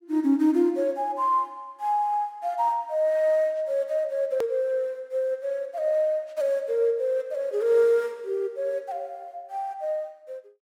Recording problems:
edit click; at 4.5 s

